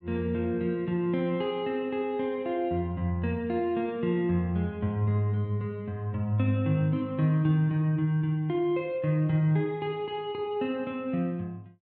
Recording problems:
none

